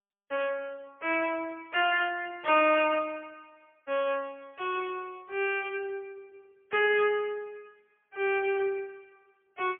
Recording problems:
telephone audio; 340 Hz to 3.3 kHz, AMR-NB, then MP3

